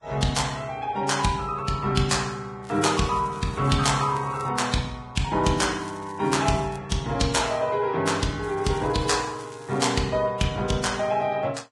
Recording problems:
lossy codec; Vorbis, log-spectral distance 4 dB, nothing above 10.4 kHz
crackling; from 2.5 to 4.5 s, at 6 s and from 8.5 to 10 s; loose cable, SNR 25 dB

